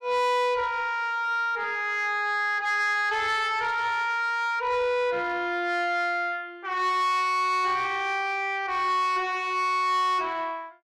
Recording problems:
distortion; soft clipping, signal-to-distortion ratio 11 dB

